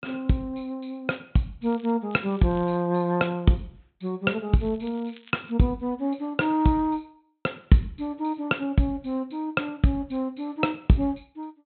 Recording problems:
low-pass filter; nothing above 4 kHz
crackle; at 1.5 s, at 2 s and at 4.5 s; loose cable, SNR 27 dB

